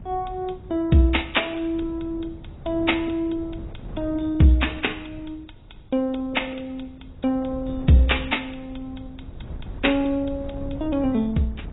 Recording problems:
lossy compression; AAC, log-spectral distance 6 dB, nothing above 3.8 kHz
wind on the microphone; below 140 Hz, SNR 16 dB

